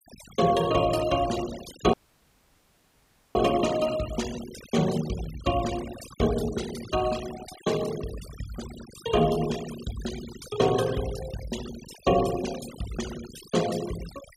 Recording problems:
denoising artefacts; signal-to-artefact ratio 12 dB
audio cutting out; at 2 s for 1.5 s

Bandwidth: 15.5 kHz